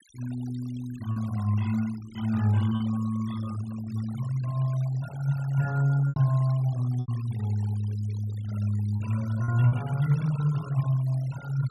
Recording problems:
denoising artefacts; signal-to-artefact ratio 19 dB
packet loss; 3% of the sound replaced, filled with repeated pitch periods

